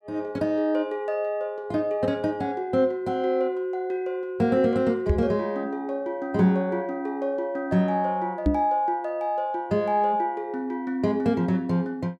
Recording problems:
knock on the microphone; at 5 s and at 8.5 s; peak +7 dB vs average level

